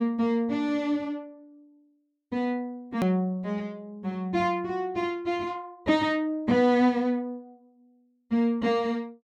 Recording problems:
click at an edit; at 3 s

